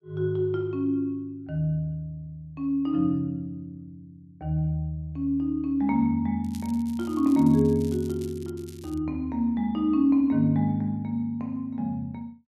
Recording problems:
crackle; from 6.5 to 9 s; loose cable, SNR 24 dB

